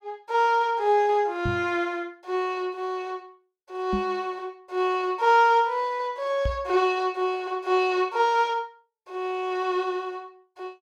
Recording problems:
microphone thump; at 1.5 s, at 4 s and at 6.5 s; peak 0 dB vs average level

